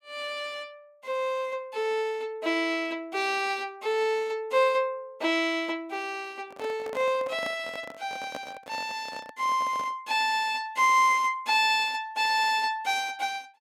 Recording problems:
microphone handling noise; from 6.5 to 10 s; peak -6 dB vs average level

